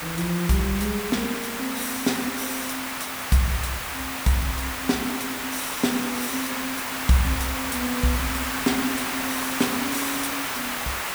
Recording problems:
background hiss; SNR 1 dB

